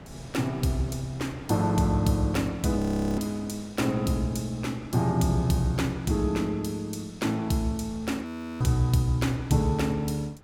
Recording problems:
wind on the microphone; below 550 Hz, SNR 23 dB
frozen audio; at 3 s and at 8.5 s

